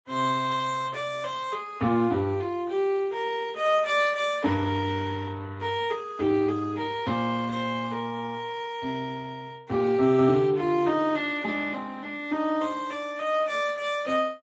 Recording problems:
lossy compression; Opus, then Speex, log-spectral distance 4 dB, nothing above 7.6 kHz

